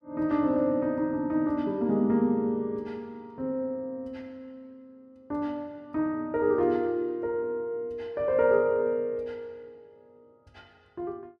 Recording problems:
none

